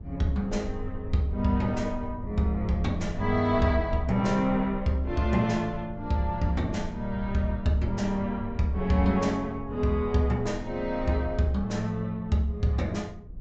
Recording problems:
low-pass filter; nothing above 8 kHz
low-frequency rumble; below 76 Hz, SNR 14 dB

